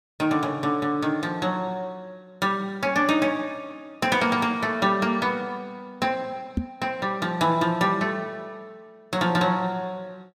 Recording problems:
knock on the microphone; at 6.5 s; peak +3 dB vs average level

